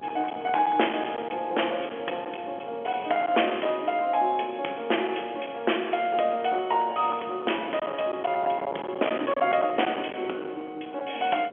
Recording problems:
phone line; 300 Hz to 3.4 kHz, G.711
distortion; hard clipping, uneven, signal-to-distortion ratio 22 dB
wind on the microphone; below 1.1 kHz, SNR 12 dB

